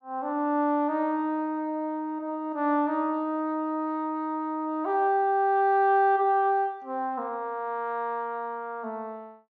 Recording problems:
treble cut off; nothing above 7.3 kHz

